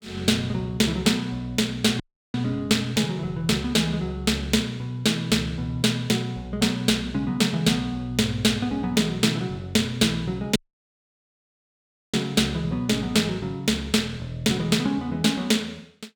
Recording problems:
dropout; at 2 s and at 11 s for 1.5 s

